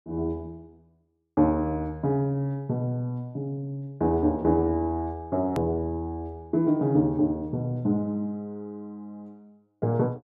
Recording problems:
edit click; at 5.5 s

